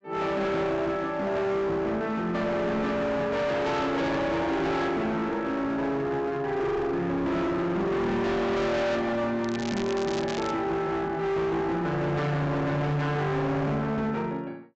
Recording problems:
low-pass filter; nothing above 8 kHz
distortion; hard clipping, uneven, signal-to-distortion ratio 5 dB
crackling; from 9.5 to 11 s; loose cable, SNR 12 dB

